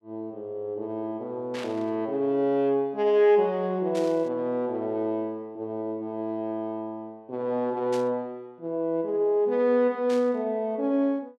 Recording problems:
burst of static; 4 times, first at 1.5 s; peak -8 dB vs average level

